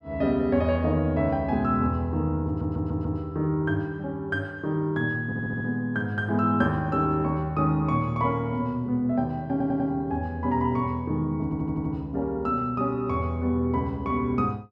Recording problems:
audio stuttering; 4 times, first at 2.5 s

